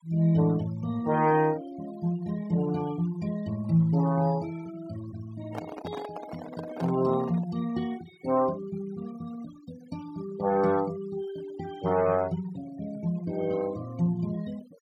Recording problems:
noise reduction artefacts; signal-to-artefact ratio 20 dB
handling noise; from 5.5 to 7.5 s; peak -4 dB vs average level

